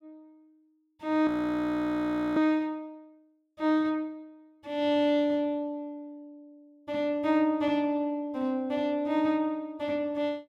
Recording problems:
audio freezing; at 1.5 s for 1 s

